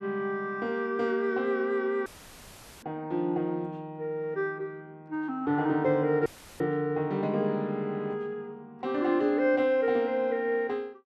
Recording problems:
audio cutting out; at 2 s for 1 s and at 6.5 s; filled with static

